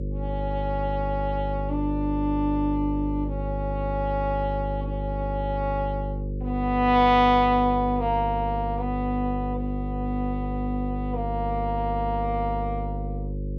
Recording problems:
hum; 50 Hz, harmonics up to 550 Hz, SNR 5 dB

